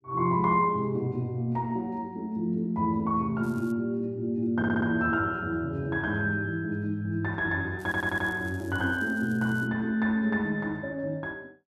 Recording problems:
crackle; at 3.5 s and from 8 to 9.5 s; loose cable, SNR 27 dB
stutter; at 4.5 s and at 8 s

